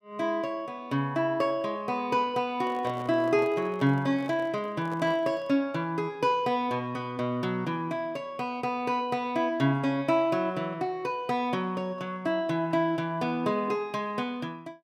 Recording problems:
microphone handling noise; from 2.5 to 5.5 s; peak -10 dB vs average level

